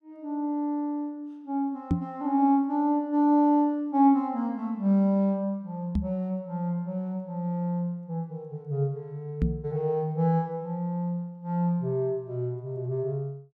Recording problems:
microphone thump; at 2 s, at 6 s and at 9.5 s; peak +6 dB vs average level

